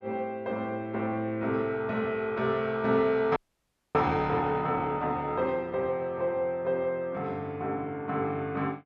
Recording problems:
audio freezing; at 3.5 s for 0.5 s

